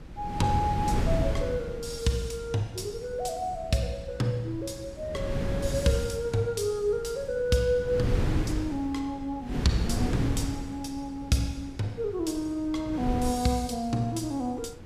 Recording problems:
wind noise; below 240 Hz, SNR 4 dB

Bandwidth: 15 kHz